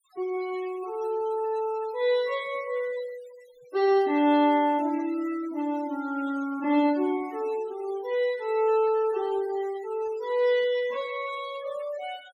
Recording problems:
noise reduction artefacts; signal-to-artefact ratio 20 dB

